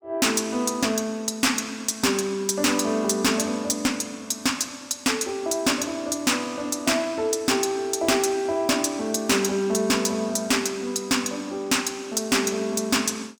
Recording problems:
distortion; hard clipping, signal-to-distortion ratio 11 dB

